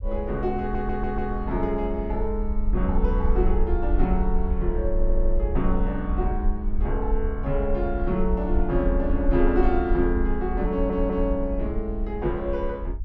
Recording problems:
rumble; below 52 Hz, SNR 2 dB
audio stuttering; at 0.5 s, at 5 s and at 11 s

